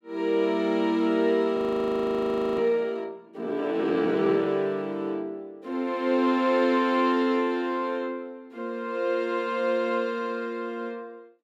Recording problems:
frozen audio; at 1.5 s for 1 s

